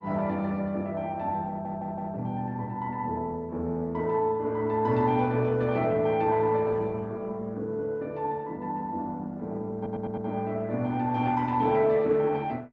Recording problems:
lossy codec; Opus, log-spectral distance 2 dB
audio stuttering; at 1.5 s and at 10 s

